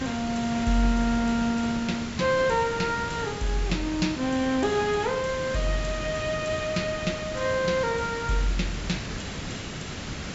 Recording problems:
low-pass filter; nothing above 8 kHz
hiss; SNR 8 dB

